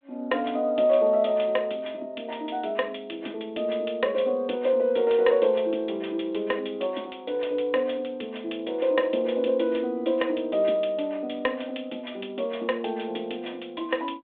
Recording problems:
phone line; 220 Hz to 3.6 kHz, G.726

